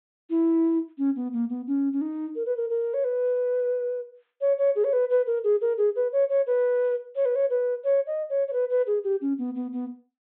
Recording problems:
low-pass filter; nothing above 4 kHz

